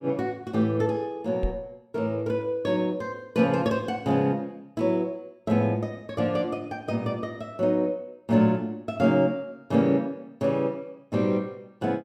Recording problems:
microphone thump; at 1.5 s; peak 0 dB vs average level

